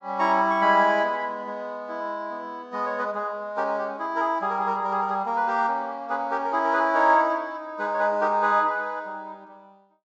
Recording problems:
treble missing; nothing above 8 kHz

